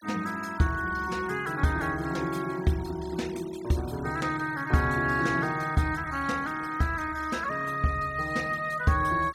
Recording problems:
denoising artefacts; signal-to-artefact ratio 20 dB

